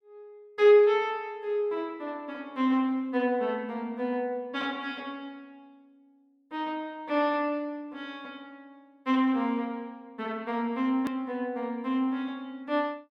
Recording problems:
click at an edit; at 11 s

